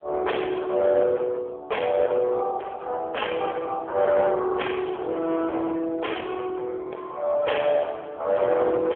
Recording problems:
telephone audio; 340 Hz to 3.4 kHz, AMR-NB
distorted audio; hard clipping, uneven, signal-to-distortion ratio 10 dB

